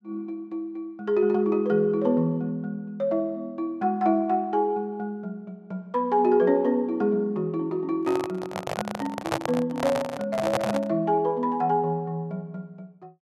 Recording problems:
microphone handling noise; from 8 to 11 s; peak +4 dB vs average level

